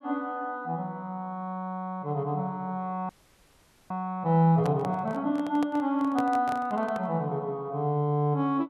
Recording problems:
audio freezing; at 3 s for 1 s
handling noise; from 4.5 to 7 s; peak -2 dB vs average level

